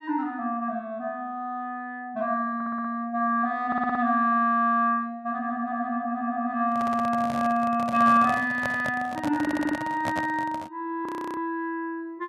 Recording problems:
stutter; 4 times, first at 2.5 s
microphone handling noise; from 6.5 to 11 s; peak -1 dB vs average level
frozen audio; at 11 s

